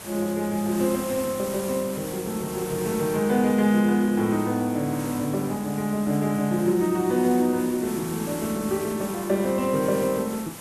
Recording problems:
hiss; slope -3 dB per octave, SNR 13 dB

